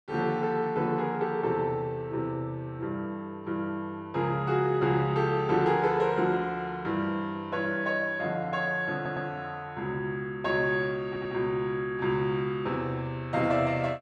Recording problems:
audio stuttering; at 9 s and at 11 s

